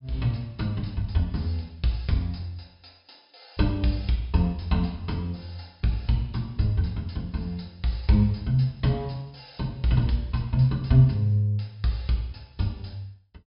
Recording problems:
low-pass filter; nothing above 5.5 kHz

